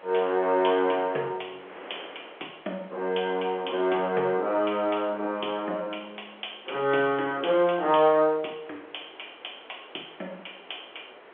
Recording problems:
telephone audio; 320 Hz to 3.4 kHz, G.711
wind noise; below 1.9 kHz, SNR 22 dB

